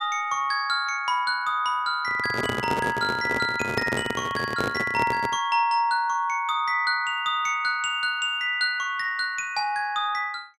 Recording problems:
handling noise; from 2 to 5.5 s; peak +1 dB vs average level

